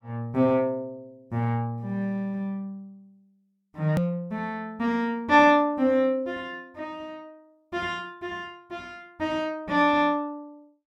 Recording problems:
edit click; at 4 s

